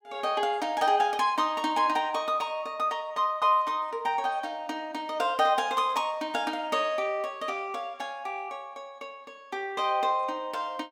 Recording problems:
none

